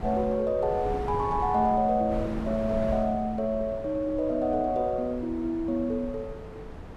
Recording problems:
wind noise; below 450 Hz, SNR 11 dB

